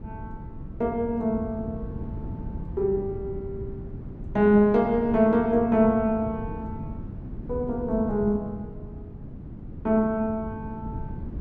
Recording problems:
wind noise; below 210 Hz, SNR 13 dB

